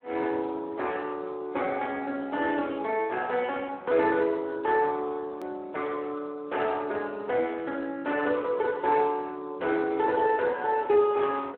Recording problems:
phone line; 260 Hz to 2.9 kHz, Speex
click at an edit; at 5.5 s

